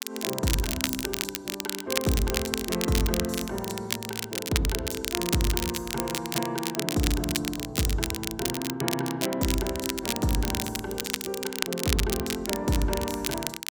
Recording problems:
crackle; vinyl, SNR 1 dB

